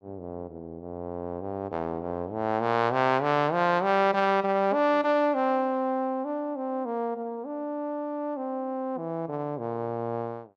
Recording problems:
none

